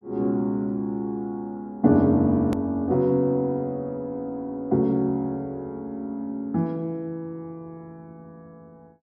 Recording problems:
click at an edit; at 2.5 s

